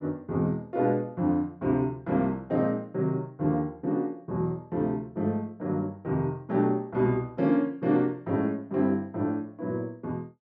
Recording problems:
none

